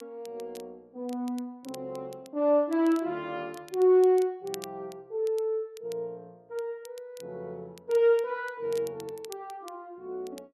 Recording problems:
crackling; vinyl, SNR 23 dB

